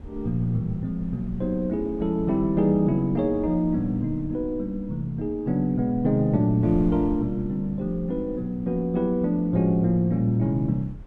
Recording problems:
wind on the microphone; below 96 Hz, SNR 16 dB

